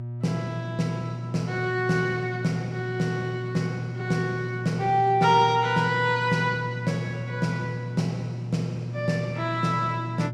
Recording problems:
hum; 60 Hz, harmonics up to 600 Hz, SNR 7 dB

